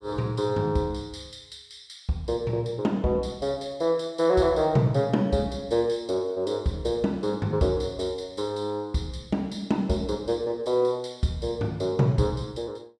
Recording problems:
none

